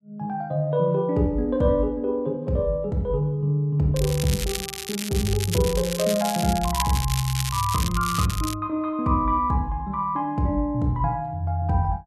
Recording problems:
crackling; from 4 to 8.5 s; loose cable, SNR 7 dB

